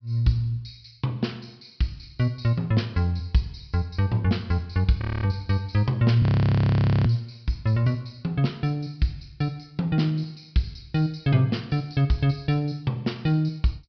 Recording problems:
low-pass filter; nothing above 5.5 kHz
frozen audio; at 5 s and at 6 s for 1 s

